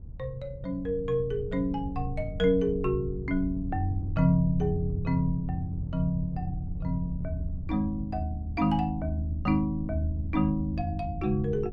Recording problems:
wind on the microphone; below 100 Hz, SNR 9 dB

